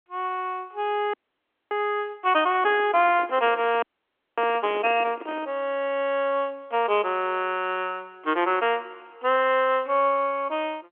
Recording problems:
phone line; 240 Hz to 3.4 kHz, G.711
audio freezing; at 1 s for 0.5 s and at 4 s for 0.5 s
handling noise; from 2.5 to 5.5 s; peak -10 dB vs average level

